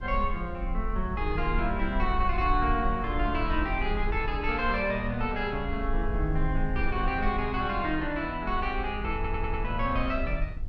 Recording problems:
low-frequency rumble; below 56 Hz, SNR 5 dB
audio stuttering; at 9 s

